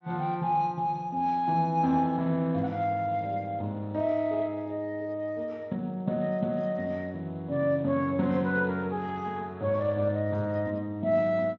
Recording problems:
lossy compression; Speex, log-spectral distance 2 dB

